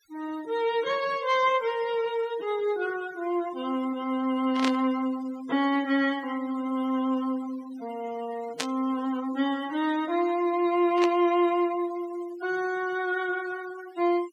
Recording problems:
denoising artefacts; signal-to-artefact ratio 19 dB
burst of static; at 4.5 s, at 8.5 s and at 11 s; peak +2 dB vs average level

